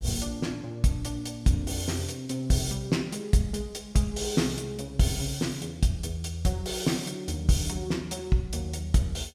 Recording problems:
none

